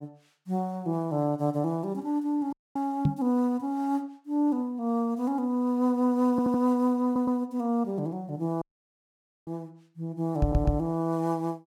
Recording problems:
audio cutting out; at 2.5 s and at 8.5 s for 1 s
microphone bump; at 3 s and at 10 s; peak +7 dB vs average level
audio stuttering; at 6.5 s, at 7 s and at 10 s

